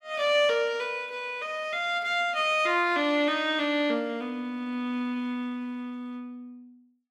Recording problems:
none

